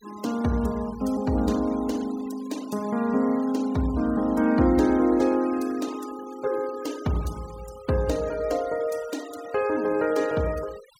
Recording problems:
denoising artefacts; signal-to-artefact ratio 20 dB

